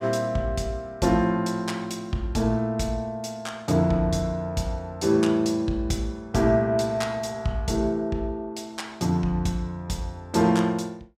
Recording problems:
none

